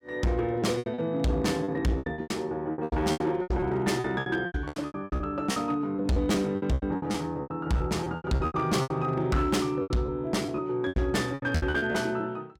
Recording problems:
distorted audio; hard clipping, signal-to-distortion ratio 10 dB
packet loss; 19% of the sound replaced, filled with repeated pitch periods

